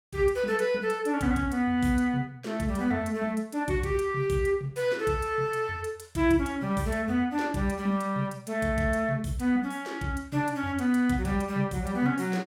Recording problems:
none

